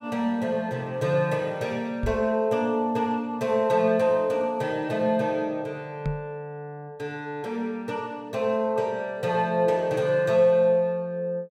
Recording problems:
knock on the microphone; at 2 s and at 6 s; peak 0 dB vs average level

